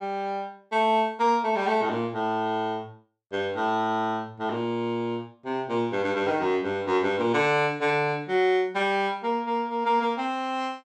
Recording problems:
none

